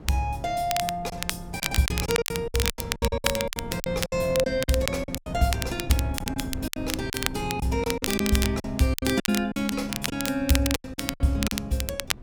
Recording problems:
wind noise; below 230 Hz, SNR 12 dB
crackling; vinyl, SNR 4 dB
packet loss; 14% of the sound replaced, filled with silence

